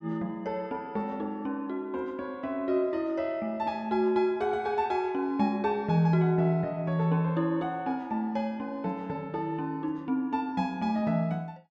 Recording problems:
none

